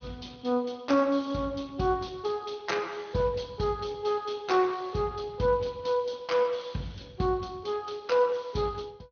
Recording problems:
treble cut off; nothing above 6.3 kHz
lossy compression; Speex, log-spectral distance 5 dB

